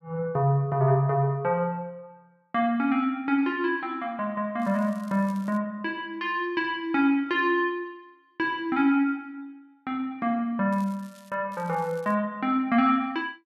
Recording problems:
crackling; at 4.5 s, at 11 s and at 12 s; loose cable, SNR 29 dB

